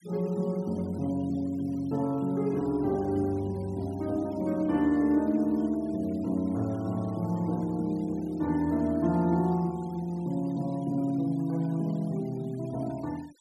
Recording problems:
denoising artefacts; signal-to-artefact ratio 26 dB

